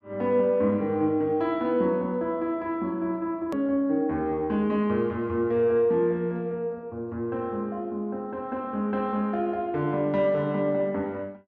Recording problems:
hard cut with a click; at 3.5 s

